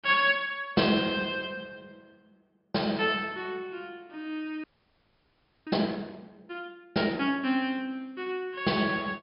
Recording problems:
low-pass filter; nothing above 5.5 kHz
audio freezing; at 4.5 s for 1 s

